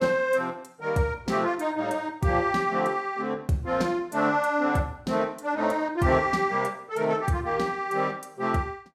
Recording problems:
none

